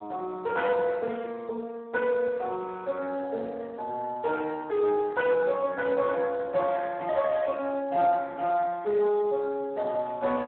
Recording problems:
phone line; 240 Hz to 4 kHz, Speex

